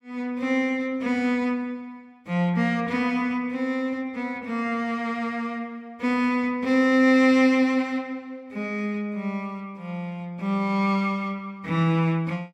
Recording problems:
none

